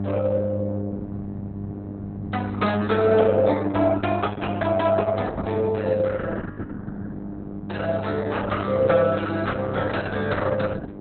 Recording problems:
lossy codec; Opus, log-spectral distance 4 dB, nothing above 4 kHz
hum; 50 Hz, harmonics up to 800 Hz, SNR 9 dB

